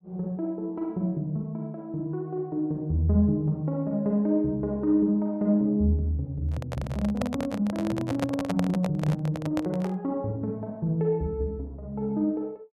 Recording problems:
handling noise; from 6.5 to 10 s; peak +2 dB vs average level

